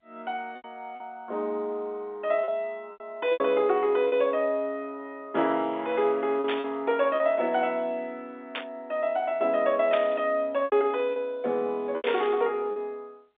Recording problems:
telephone audio; 260 Hz to 3.7 kHz, G.711
lost packets; 6% of the sound replaced, filled with repeated pitch periods
static burst; 4 times, first at 6.5 s; peak -1 dB vs average level

